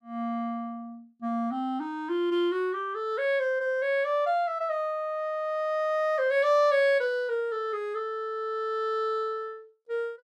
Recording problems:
none

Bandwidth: 14.5 kHz